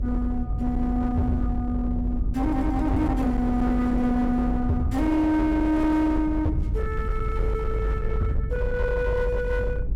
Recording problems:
distortion; hard clipping, signal-to-distortion ratio 11 dB
hum; 60 Hz, harmonics up to 600 Hz, SNR 25 dB
rumble; below 86 Hz, strongest tone 50 Hz, SNR 4 dB

